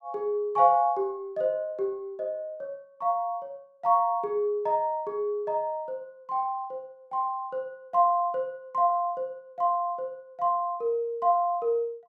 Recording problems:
none

